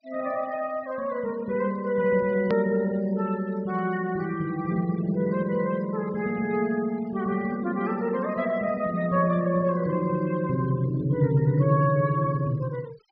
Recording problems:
treble cut off; nothing above 5.5 kHz
denoising artefacts; signal-to-artefact ratio 24 dB
edit click; at 2.5 s

